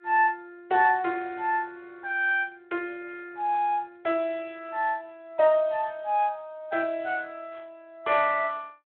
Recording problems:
telephone audio; 340 Hz to 3.8 kHz, Speex

